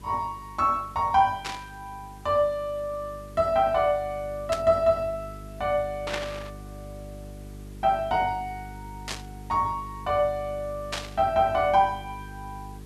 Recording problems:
hum; 50 Hz, harmonics up to 450 Hz, SNR 17 dB
hiss; slope -3 dB per octave, SNR 28 dB
burst of static; 5 times, first at 1.5 s; peak 0 dB vs average level

